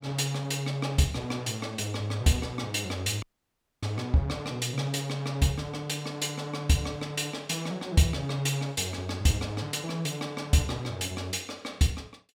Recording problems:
audio cutting out; at 3 s for 0.5 s

